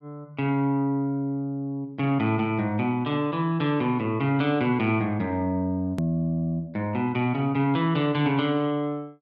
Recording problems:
hard cut with a click; at 6 s

